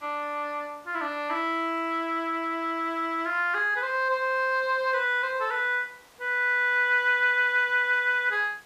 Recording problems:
hiss; slope -3 dB per octave, SNR 29 dB

